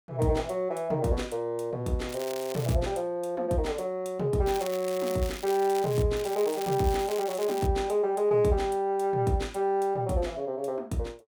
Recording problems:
crackle; at 2 s, from 4.5 to 6 s and from 6 to 7.5 s; loose cable, SNR 14 dB

